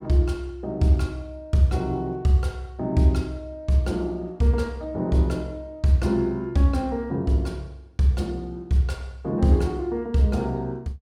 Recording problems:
none

